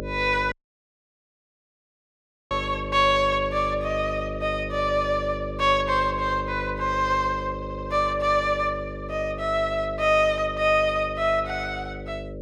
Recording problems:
mains hum; 50 Hz, harmonics up to 600 Hz, SNR 10 dB
audio cutting out; at 0.5 s for 2 s
audio stuttering; at 7.5 s

